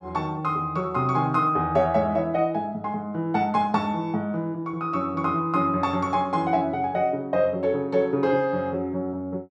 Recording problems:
none

